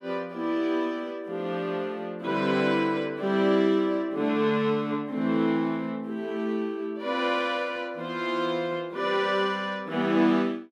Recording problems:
none

